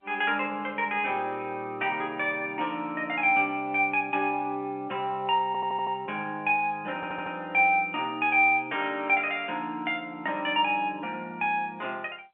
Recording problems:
phone line; 260 Hz to 3.5 kHz, G.711
audio stuttering; at 5.5 s and at 7 s

